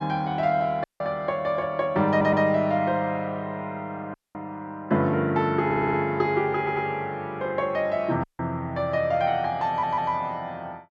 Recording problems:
audio cutting out; at 1 s, at 4 s and at 8 s
audio stuttering; 4 times, first at 2 s

